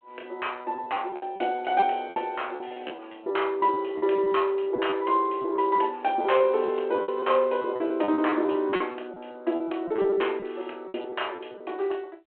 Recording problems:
telephone audio; 280 Hz to 3.2 kHz, G.726
packet loss; 14% of the sound replaced, filled with repeated pitch periods

